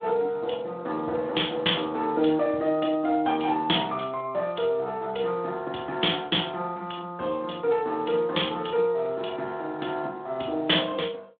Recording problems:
phone line; 240 Hz to 3.6 kHz, Speex

